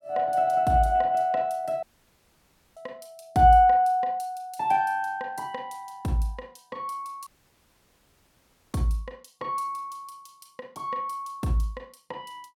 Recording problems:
dropout; at 2 s for 1 s and at 7.5 s for 1.5 s

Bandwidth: 17.5 kHz